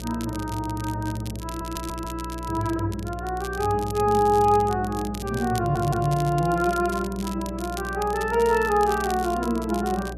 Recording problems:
hum; 60 Hz, harmonics up to 660 Hz, SNR 12 dB
crackle; vinyl, SNR 16 dB
audio stuttering; at 1.5 s and at 5.5 s

